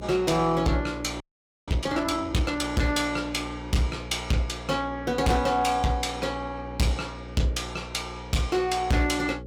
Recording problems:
distortion; hard clipping, uneven, signal-to-distortion ratio 8 dB
hum; 60 Hz, harmonics up to 540 Hz, SNR 13 dB
audio freezing; at 1 s

